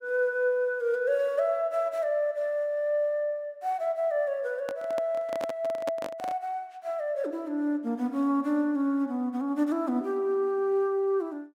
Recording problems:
handling noise; from 4.5 to 6.5 s; peak -2 dB vs average level

